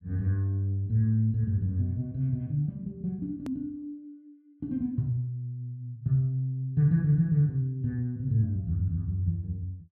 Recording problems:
hard cut with a click; at 3.5 s

